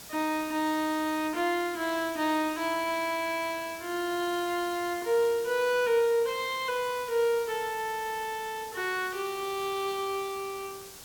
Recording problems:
hiss; SNR 14 dB

